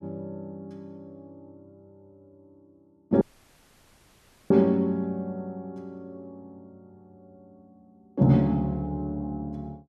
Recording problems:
dropout; at 3 s for 1.5 s

